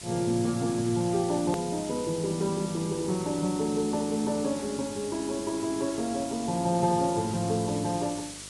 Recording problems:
lossy codec; Vorbis, log-spectral distance 10 dB, nothing above 13.1 kHz
electrical hum; 50 Hz, harmonics up to 650 Hz, SNR 23 dB
hiss; slope +2 dB per octave, SNR 12 dB
click at an edit; at 1.5 s

